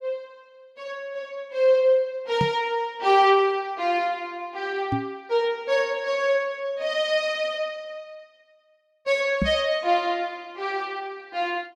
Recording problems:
microphone bump; at 2.5 s, at 5 s and at 9.5 s; peak +3 dB vs average level

